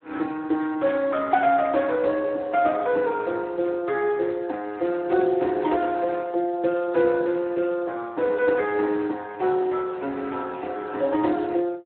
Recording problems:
phone line; 240 Hz to 2.8 kHz, Speex

